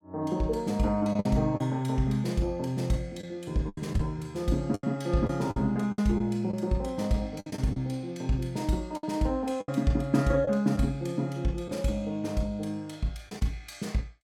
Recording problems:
lost packets; 6% of the sound replaced, filled with the last packet

